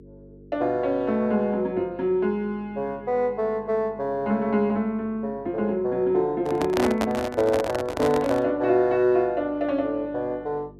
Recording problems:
electrical hum; 50 Hz, harmonics up to 450 Hz, SNR 23 dB
microphone handling noise; from 6.5 to 8.5 s; peak +1 dB vs average level

